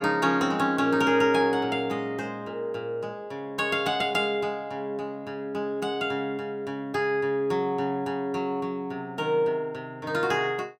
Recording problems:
none

